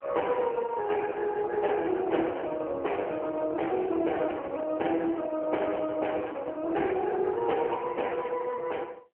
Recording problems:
telephone audio; 280 Hz to 3.1 kHz, AMR-NB

